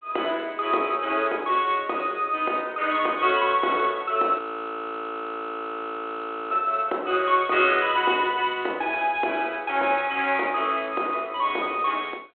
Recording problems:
telephone audio; 300 Hz to 3.3 kHz, G.726
frozen audio; at 4.5 s for 2 s

